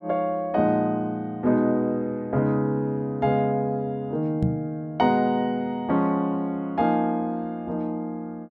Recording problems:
knock on the microphone; at 4.5 s; peak +5 dB vs average level

